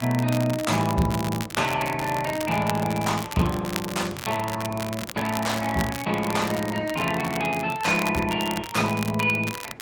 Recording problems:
lossy compression; Opus, log-spectral distance 3 dB, nothing above 18.3 kHz
wind on the microphone; below 590 Hz, SNR 20 dB
crackle; vinyl, SNR 11 dB

